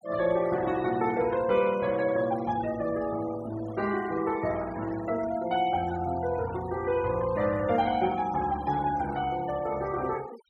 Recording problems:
denoising artefacts; signal-to-artefact ratio 17 dB

